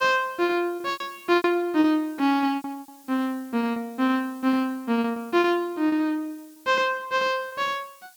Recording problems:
hiss; slope +4 dB per octave, SNR 26 dB
packet loss; 9% of the sound replaced, filled with repeated pitch periods

